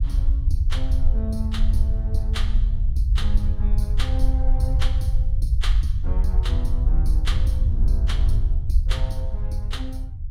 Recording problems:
rumble; below 64 Hz, SNR -9 dB

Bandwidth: 16.5 kHz